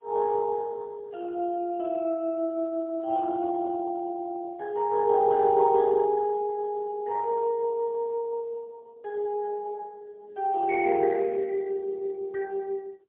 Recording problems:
phone line; 280 Hz to 2.2 kHz, AMR-NB, then MP3

